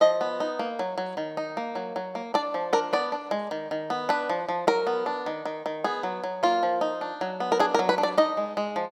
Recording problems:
none

